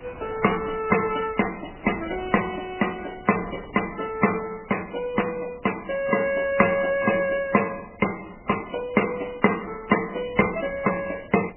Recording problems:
codec artefacts; MP3, log-spectral distance 10 dB, nothing above 3 kHz
wind noise; below 950 Hz, SNR 21 dB

